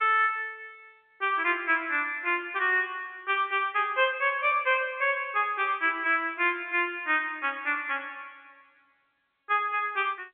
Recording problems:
phone line; 280 Hz to 3.5 kHz, G.711

